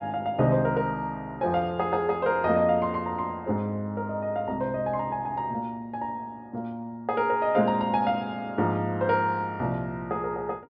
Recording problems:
low-pass filter; nothing above 5.5 kHz

